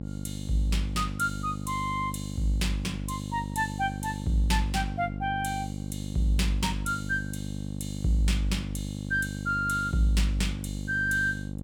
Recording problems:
hum; 50 Hz, harmonics up to 800 Hz, SNR 6 dB

